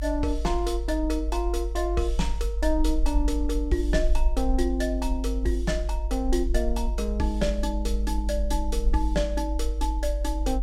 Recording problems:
rumble; below 50 Hz, strongest tone 50 Hz, SNR 0 dB

